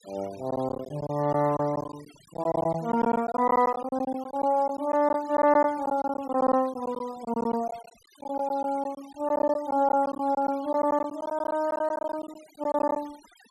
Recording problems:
noise reduction artefacts; signal-to-artefact ratio 23 dB
lost packets; 12% of the sound replaced, filled with silence

